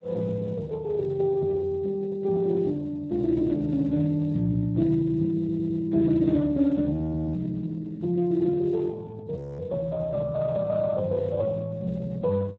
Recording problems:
lossy compression; Speex, log-spectral distance 2 dB
audio stuttering; at 5.5 s
audio freezing; at 7 s and at 9.5 s

